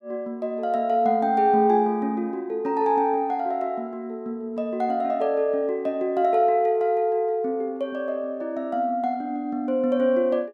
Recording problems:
none

